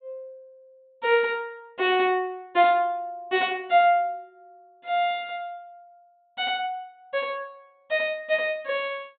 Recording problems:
treble cut off; nothing above 4 kHz

